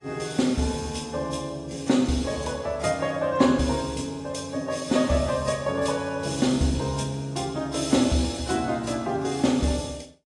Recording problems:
lossy codec; AAC, log-spectral distance 4 dB, nothing above 10.1 kHz

